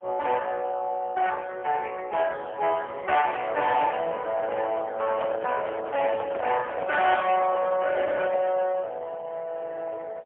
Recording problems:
phone line; 370 Hz to 2.6 kHz, AMR-NB, then MP3
distortion; soft clipping, signal-to-distortion ratio 11 dB
microphone handling noise; from 5 to 8.5 s; peak -2 dB vs average level

